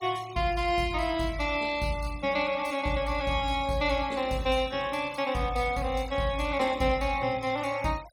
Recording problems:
noise reduction artefacts; signal-to-artefact ratio 19 dB

